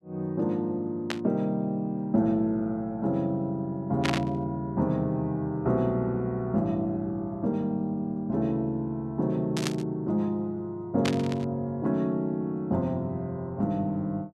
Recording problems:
burst of static; 4 times, first at 1 s; peak +3 dB vs average level

